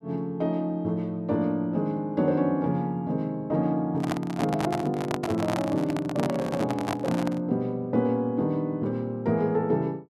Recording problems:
microphone handling noise; from 4 to 7.5 s; peak +1 dB vs average level

